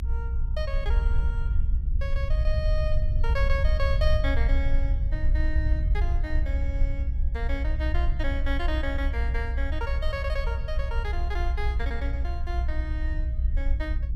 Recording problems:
low-frequency rumble; below 62 Hz, SNR -7 dB

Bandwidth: 15 kHz